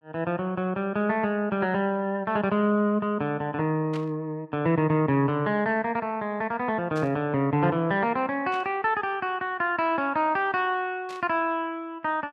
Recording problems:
burst of static; 4 times, first at 4 s; peak -11 dB vs average level

